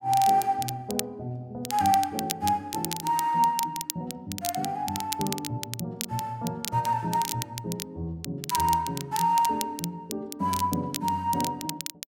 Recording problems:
crackle; vinyl, SNR 8 dB

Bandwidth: 16 kHz